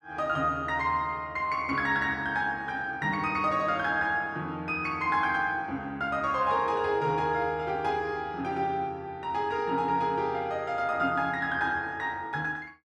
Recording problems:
none

